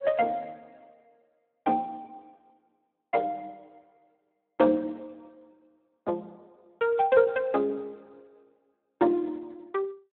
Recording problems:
phone line; 260 Hz to 3.6 kHz, Speex

